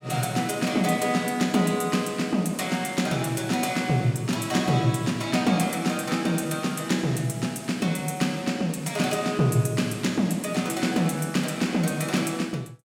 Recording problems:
none

